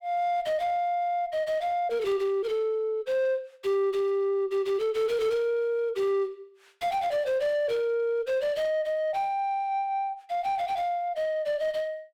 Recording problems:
distorted audio; soft clipping, signal-to-distortion ratio 11 dB

